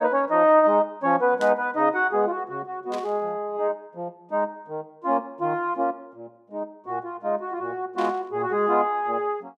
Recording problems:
static burst; at 1.5 s, at 3 s and at 8 s; peak -9 dB vs average level

